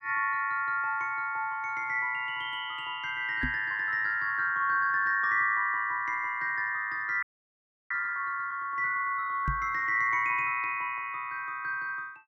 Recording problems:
microphone thump; at 3.5 s and at 9.5 s; peak 0 dB vs average level
audio freezing; at 7 s for 0.5 s

